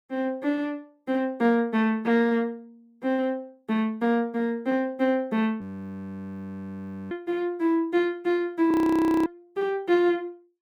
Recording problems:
audio freezing; at 5.5 s for 1.5 s and at 8.5 s for 0.5 s

